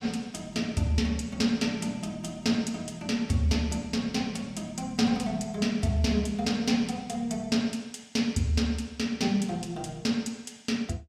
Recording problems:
none

